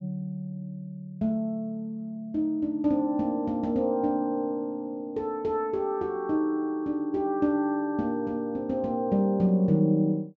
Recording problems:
treble missing; nothing above 8 kHz

